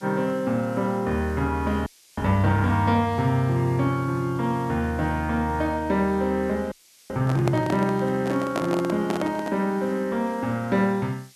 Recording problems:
hiss; SNR 27 dB
frozen audio; at 2 s and at 6.5 s
microphone handling noise; from 7 to 9.5 s; peak +2 dB vs average level

